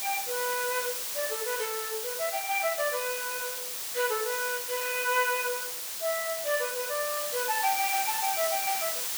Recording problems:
hiss; slope +2 dB per octave, SNR 1 dB
crackling; from 6 to 8.5 s; loose cable, SNR 17 dB

